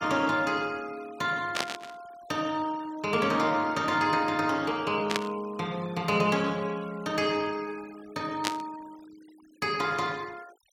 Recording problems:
denoising artefacts; signal-to-artefact ratio 23 dB
static burst; at 1.5 s, at 5 s and at 8.5 s; peak +5 dB vs average level

